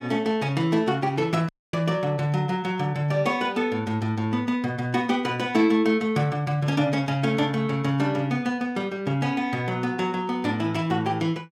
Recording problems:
dropout; at 1.5 s

